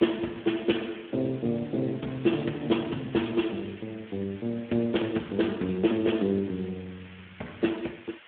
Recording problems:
phone line; 170 Hz to 3.3 kHz, Speex
hiss; SNR 20 dB

